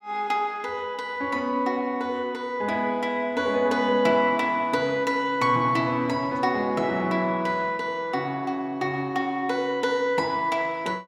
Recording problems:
none

